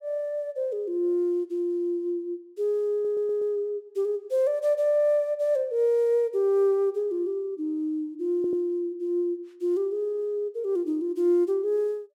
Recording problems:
stutter; at 3 s and at 8.5 s

